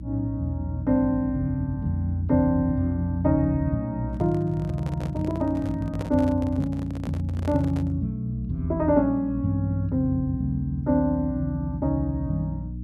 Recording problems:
electrical hum; 60 Hz, harmonics up to 300 Hz, SNR 12 dB
handling noise; from 4 to 8 s; peak -7 dB vs average level

